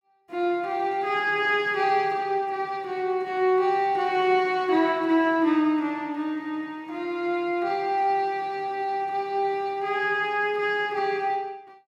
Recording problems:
none

